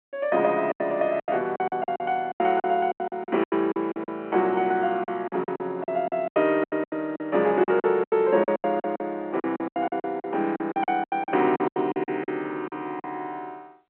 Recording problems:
phone line; 220 Hz to 3.4 kHz, G.711
packet loss; 19% of the sound replaced, filled with silence

